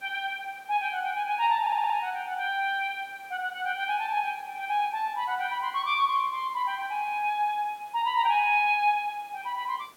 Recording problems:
hiss; slope -3 dB per octave, SNR 27 dB
audio stuttering; at 1.5 s

